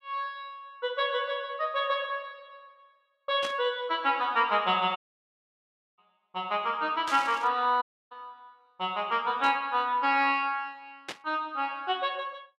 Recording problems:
burst of static; 4 times, first at 3.5 s; peak -4 dB vs average level
audio cutting out; at 5 s for 1 s and at 8 s

